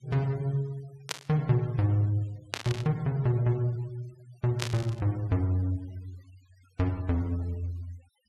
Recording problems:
noise reduction artefacts; signal-to-artefact ratio 27 dB
static burst; at 1 s, at 2.5 s and at 4.5 s; peak +2 dB vs average level

